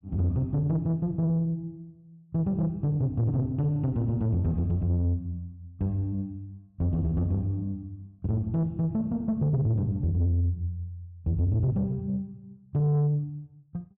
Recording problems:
distorted audio; soft clipping, signal-to-distortion ratio 11 dB

